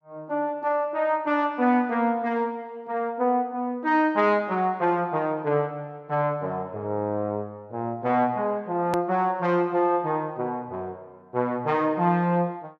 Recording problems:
hard cut with a click; at 9 s

